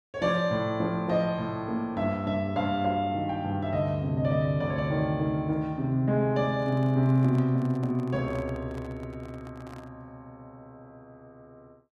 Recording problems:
handling noise; from 6.5 to 10 s; peak -12 dB vs average level

